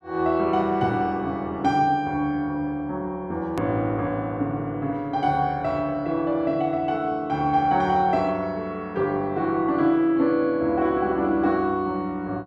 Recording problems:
edit click; at 3.5 s

